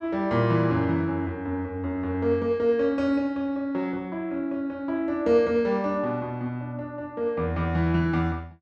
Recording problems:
none

